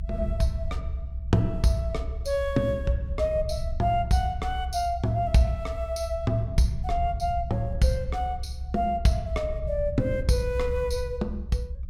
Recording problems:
low-frequency rumble; below 68 Hz, SNR 7 dB

